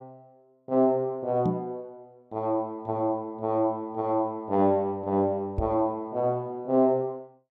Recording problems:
knock on the microphone; at 1.5 s and at 5.5 s; peak +2 dB vs average level

